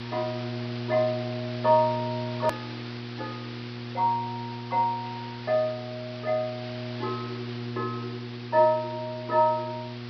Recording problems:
treble missing; nothing above 5.5 kHz
hum; 60 Hz, harmonics up to 840 Hz, SNR 9 dB
background hiss; SNR 14 dB
click at an edit; at 2.5 s

